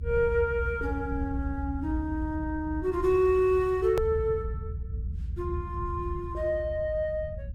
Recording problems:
low-frequency rumble; below 86 Hz, SNR 7 dB
hard cut with a click; at 4 s

